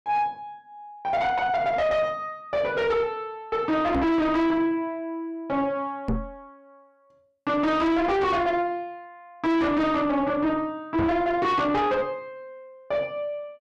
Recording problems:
distorted audio; soft clipping, signal-to-distortion ratio 6 dB
microphone bump; at 4 s, at 6 s and at 11 s; peak +3 dB vs average level

